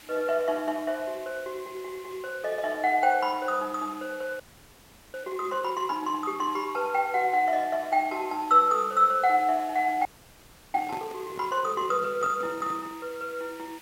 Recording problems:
background hiss; SNR 22 dB
frozen audio; at 4.5 s for 0.5 s and at 10 s for 0.5 s
handling noise; from 10 to 13 s; peak -9 dB vs average level

